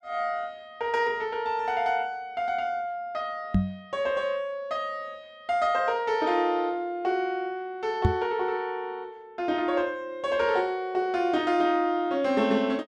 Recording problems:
knock on the microphone; at 3.5 s and at 8 s; peak +8 dB vs average level

